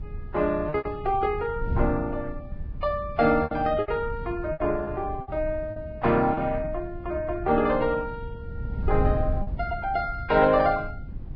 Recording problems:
lossy codec; Vorbis, log-spectral distance 2 dB
wind on the microphone; below 110 Hz, SNR 9 dB
lost packets; 6% of the sound replaced, filled with repeated pitch periods

